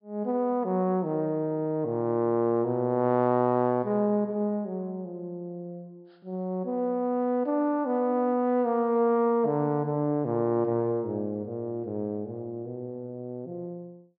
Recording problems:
treble cut off; nothing above 5.5 kHz

